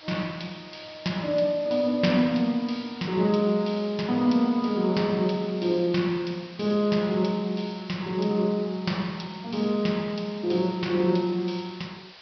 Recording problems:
treble missing; nothing above 5.5 kHz
hiss; SNR 20 dB

